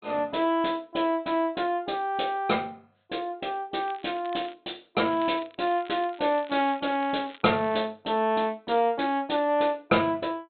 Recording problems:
treble cut off; nothing above 4 kHz
crackling; at 4 s and from 5 to 8 s; loose cable, SNR 22 dB

